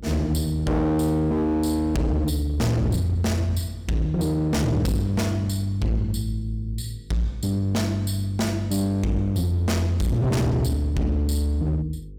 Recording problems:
distortion; hard clipping, signal-to-distortion ratio 7 dB
hum; 50 Hz, harmonics up to 500 Hz, SNR 20 dB

